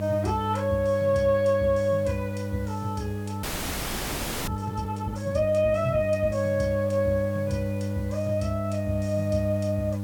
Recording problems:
hum; 50 Hz, harmonics up to 900 Hz, SNR 5 dB
background hiss; slope -1 dB per octave, SNR 26 dB
frozen audio; at 3.5 s for 1 s

